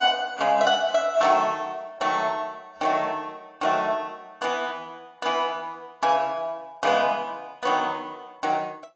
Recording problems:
codec artefacts; AAC, log-spectral distance 2 dB

